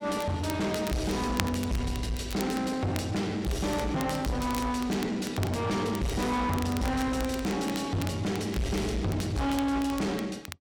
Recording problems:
distorted audio; soft clipping, signal-to-distortion ratio 7 dB
crackling; vinyl, SNR 14 dB

